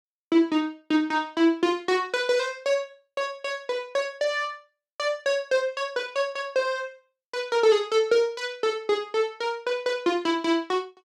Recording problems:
none

